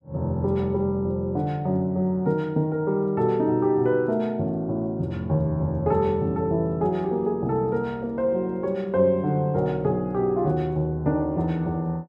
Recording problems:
none

